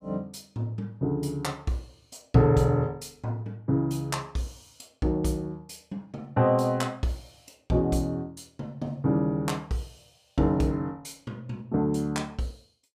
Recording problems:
none

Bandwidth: 15 kHz